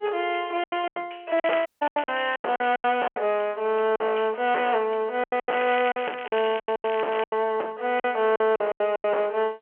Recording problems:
phone line; 340 Hz to 3.2 kHz, G.711
distortion; hard clipping, signal-to-distortion ratio 12 dB
lost packets; 15% of the sound replaced, filled with silence
crackle; at 1.5 s and from 5.5 to 7.5 s; loose cable, SNR 14 dB
dropout; at 1.5 s

